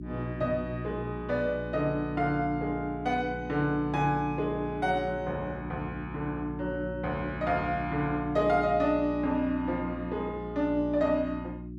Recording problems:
hum; 60 Hz, harmonics up to 360 Hz, SNR 9 dB

